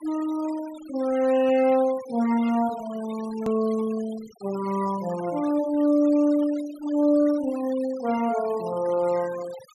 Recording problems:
denoising artefacts; signal-to-artefact ratio 20 dB
hard cut with a click; at 3.5 s

